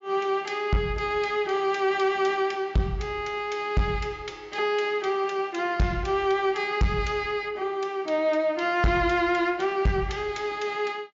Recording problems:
low-pass filter; nothing above 7.4 kHz
distorted audio; soft clipping, signal-to-distortion ratio 11 dB

